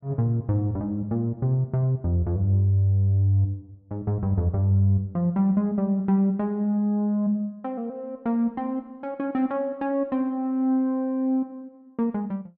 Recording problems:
none

